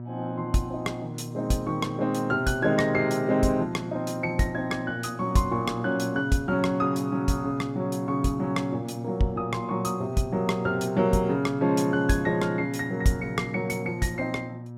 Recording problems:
electrical hum; 60 Hz, harmonics up to 960 Hz, SNR 11 dB

